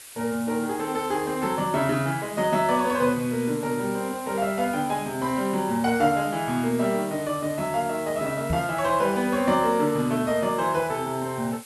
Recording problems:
hiss; slope +1 dB per octave, SNR 16 dB
knock on the microphone; at 8.5 s; peak +1 dB vs average level

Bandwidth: 12 kHz